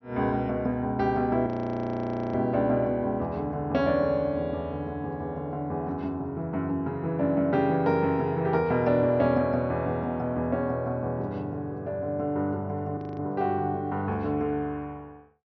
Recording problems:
treble cut off; nothing above 5.9 kHz
frozen audio; at 1.5 s for 1 s and at 13 s

